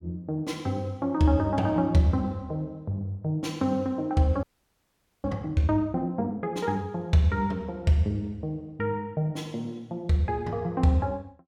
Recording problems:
audio freezing; at 4.5 s for 1 s

